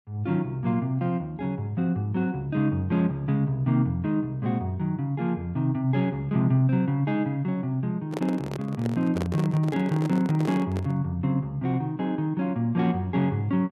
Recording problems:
microphone handling noise; from 8 to 11 s; peak -2 dB vs average level

